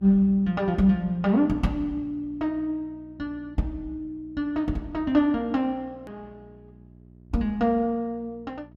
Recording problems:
hum; 60 Hz, harmonics up to 660 Hz, SNR 23 dB
edit click; at 6 s

